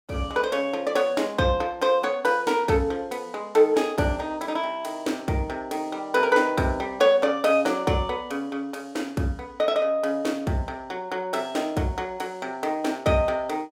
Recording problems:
none

